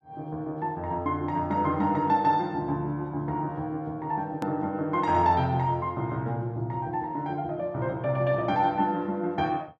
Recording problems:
edit click; at 4.5 s

